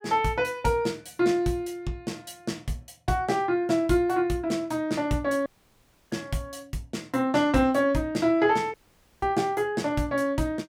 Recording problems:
dropout; at 5.5 s for 0.5 s and at 8.5 s

